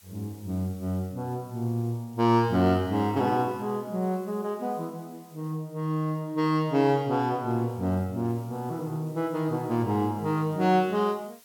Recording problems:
background hiss; slope +1 dB per octave, SNR 27 dB

